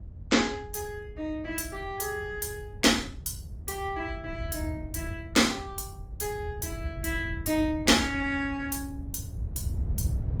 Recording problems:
codec artefacts; Opus, log-spectral distance 3 dB, nothing above 19 kHz
wind on the microphone; below 110 Hz, SNR 9 dB

